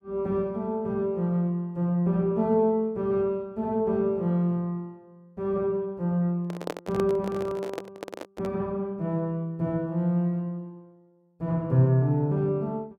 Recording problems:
microphone handling noise; from 6.5 to 8.5 s; peak -2 dB vs average level

